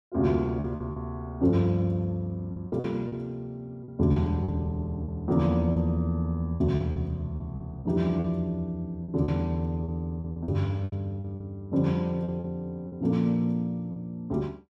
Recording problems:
lost packets; 9% of the sound replaced, filled with repeated pitch periods

